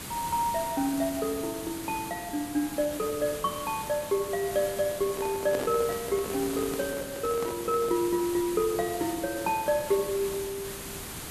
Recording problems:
hiss; slope -3 dB per octave, SNR 9 dB
microphone handling noise; from 5 to 8 s; peak -1 dB vs average level

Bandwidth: 13.5 kHz